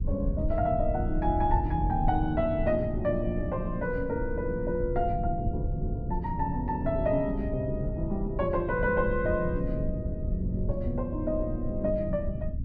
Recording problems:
low-frequency rumble; below 110 Hz, SNR 4 dB

